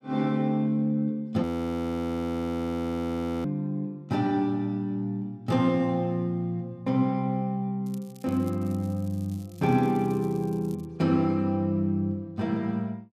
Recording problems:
audio freezing; at 1.5 s for 2 s
crackle; from 8 to 11 s; loose cable, SNR 27 dB

